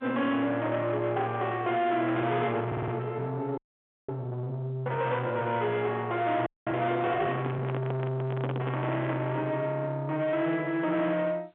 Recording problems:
telephone audio; 150 Hz to 3.6 kHz, G.711
distortion; soft clipping, signal-to-distortion ratio 8 dB
audio stuttering; at 2.5 s
frozen audio; at 3.5 s for 0.5 s and at 6.5 s
microphone handling noise; from 7 to 9 s; peak +3 dB vs average level

